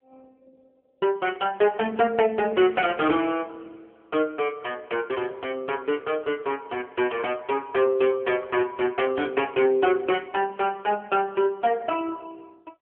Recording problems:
telephone audio; 240 Hz to 3.2 kHz, AMR-NB

